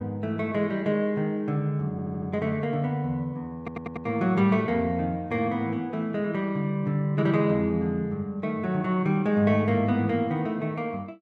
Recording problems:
audio stuttering; at 2 s and at 3.5 s

